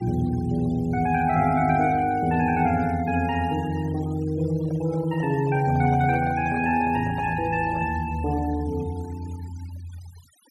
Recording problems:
noise reduction artefacts; signal-to-artefact ratio 21 dB
handling noise; from 4.5 to 8 s; peak -11 dB vs average level

